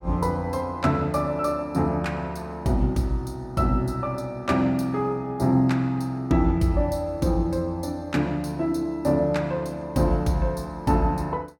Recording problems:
none

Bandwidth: 18 kHz